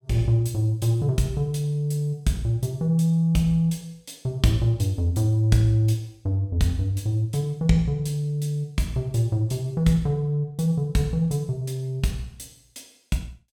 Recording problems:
none

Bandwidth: 18.5 kHz